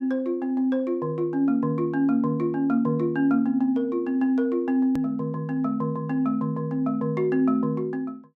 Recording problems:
click at an edit; at 5 s

